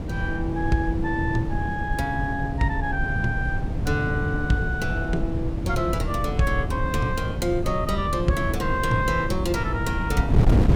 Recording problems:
wind on the microphone; below 160 Hz, SNR 2 dB

